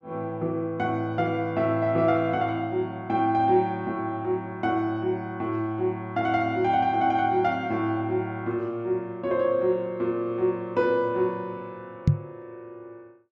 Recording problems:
microphone thump; at 12 s; peak +9 dB vs average level

